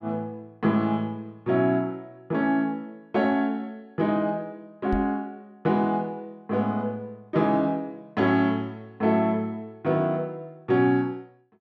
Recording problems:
microphone thump; at 5 s; peak -2 dB vs average level

